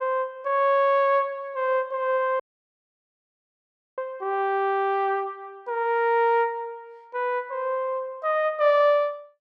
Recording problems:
audio cutting out; at 2.5 s for 1.5 s

